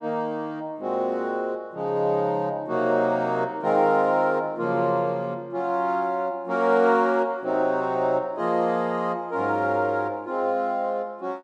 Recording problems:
none

